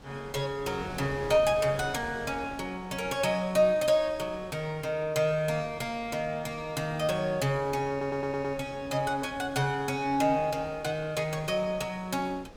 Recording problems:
wind noise; below 770 Hz, SNR 18 dB
audio stuttering; at 8 s

